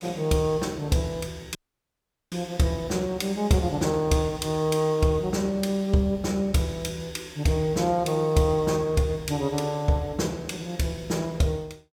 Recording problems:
dropout; at 1.5 s for 1 s

